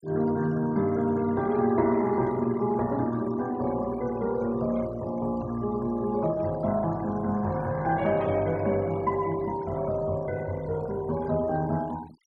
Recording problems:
denoising artefacts; signal-to-artefact ratio 21 dB

